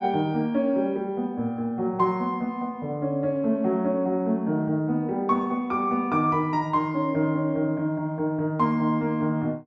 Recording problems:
none

